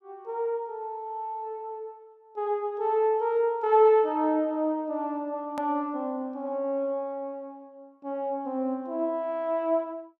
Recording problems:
click at an edit; at 5.5 s

